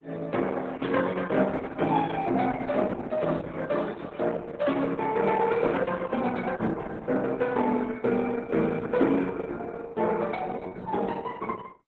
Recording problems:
lossy compression; Opus, then Opus, log-spectral distance 4 dB

